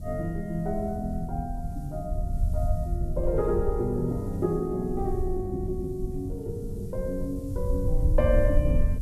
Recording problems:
background hiss; SNR 27 dB
low-frequency rumble; below 74 Hz, SNR 2 dB
wind on the microphone; below 170 Hz, SNR 14 dB

